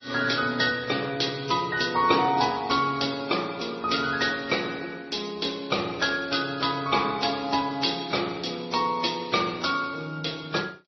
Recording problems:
codec artefacts; MP3, then AAC, log-spectral distance 7 dB, nothing above 5.5 kHz

